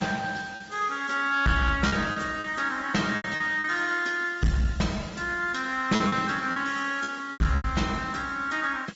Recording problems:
low-pass filter; nothing above 7.6 kHz
lossy compression; Opus, log-spectral distance 5 dB
distortion; hard clipping, uneven, signal-to-distortion ratio 11 dB
background hiss; SNR 28 dB
packet loss; 7% of the sound replaced, filled with repeated pitch periods

